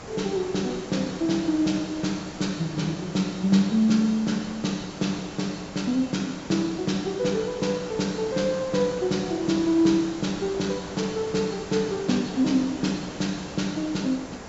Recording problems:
treble cut off; nothing above 7.6 kHz
hiss; slope -5 dB per octave, SNR 14 dB

